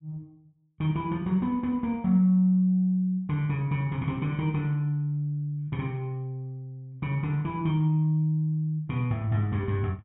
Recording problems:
treble cut off; nothing above 4 kHz

